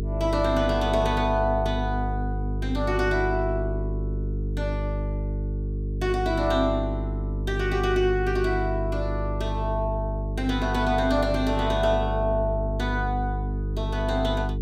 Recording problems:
hum; 50 Hz, harmonics up to 450 Hz, SNR 3 dB

